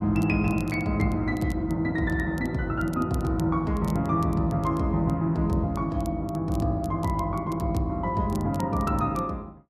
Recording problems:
crackle; vinyl, SNR 25 dB

